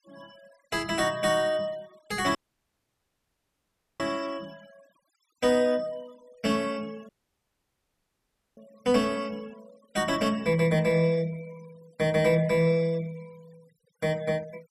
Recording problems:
denoising artefacts; signal-to-artefact ratio 24 dB
dropout; at 2.5 s for 1.5 s and at 7 s for 1.5 s

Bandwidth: 14 kHz